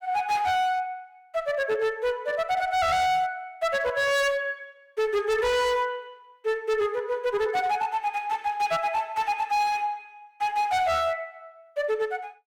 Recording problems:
distortion; hard clipping, signal-to-distortion ratio 8 dB

